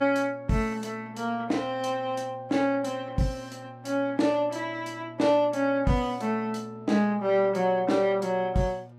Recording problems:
electrical hum; 60 Hz, harmonics up to 1.2 kHz, SNR 21 dB

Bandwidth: 15 kHz